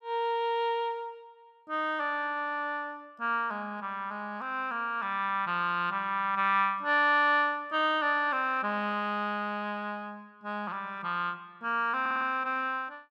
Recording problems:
stutter; at 12 s

